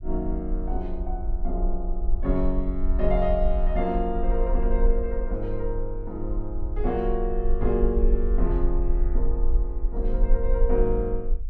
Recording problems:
low-frequency rumble; below 44 Hz, strongest tone 22 Hz, SNR -1 dB

